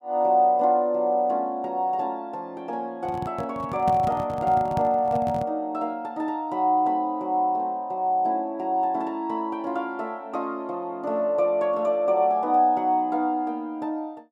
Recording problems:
microphone handling noise; from 3 to 5.5 s; peak -1 dB vs average level

